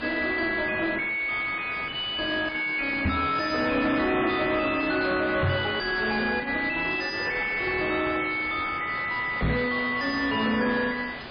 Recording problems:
lossy codec; MP3, log-spectral distance 8 dB, nothing above 4.9 kHz
distorted audio; soft clipping, signal-to-distortion ratio 5 dB
background hiss; SNR 9 dB
knock on the microphone; at 3 s, at 5.5 s and at 9.5 s; peak +7 dB vs average level

